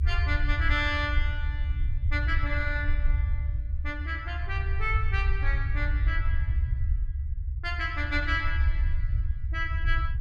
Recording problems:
rumble; below 74 Hz, SNR -2 dB

